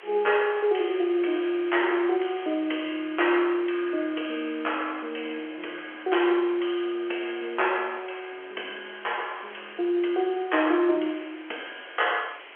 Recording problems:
phone line; 300 Hz to 3.3 kHz, G.711
hiss; SNR 20 dB

